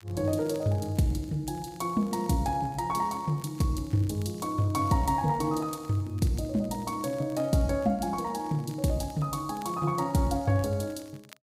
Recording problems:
crackling; vinyl, SNR 28 dB

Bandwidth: 15.5 kHz